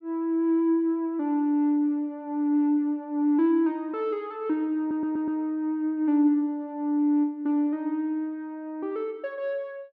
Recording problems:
audio stuttering; at 5 s

